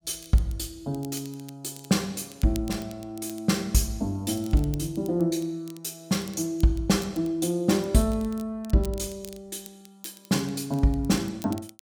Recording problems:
crackle; vinyl, SNR 21 dB

